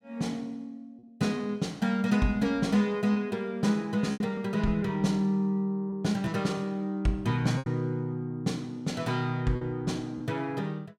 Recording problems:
lost packets; 3% of the sound replaced, filled with repeated pitch periods

